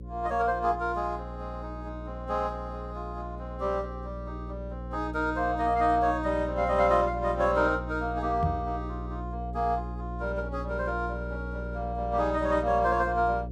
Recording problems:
hum; 60 Hz, harmonics up to 540 Hz, SNR 9 dB
knock on the microphone; at 8.5 s; peak +4 dB vs average level

